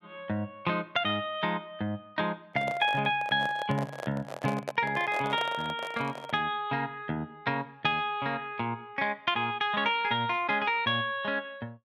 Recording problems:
microphone handling noise; from 2.5 to 6.5 s; peak 0 dB vs average level

